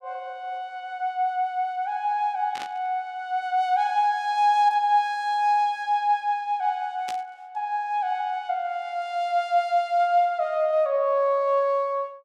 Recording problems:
burst of static; at 2.5 s and at 7 s; peak -8 dB vs average level

